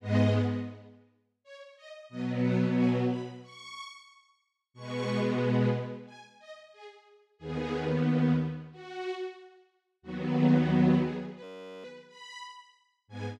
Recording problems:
frozen audio; at 11 s

